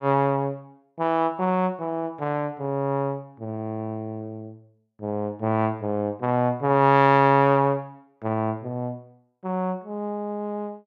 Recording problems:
none

